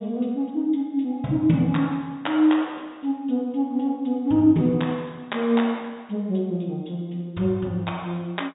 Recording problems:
treble missing; nothing above 4 kHz

